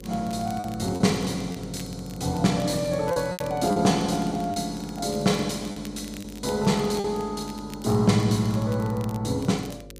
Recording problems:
electrical hum; 50 Hz, harmonics up to 550 Hz, SNR 19 dB
crackle; vinyl, SNR 22 dB
lost packets; 4% of the sound replaced, filled with repeated pitch periods

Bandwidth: 15 kHz